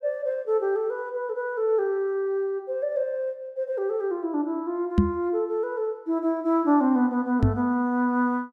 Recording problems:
microphone bump; at 5 s and at 7.5 s; peak +9 dB vs average level

